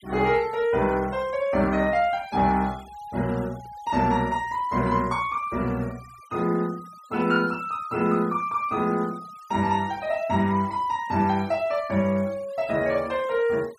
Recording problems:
noise reduction artefacts; signal-to-artefact ratio 24 dB

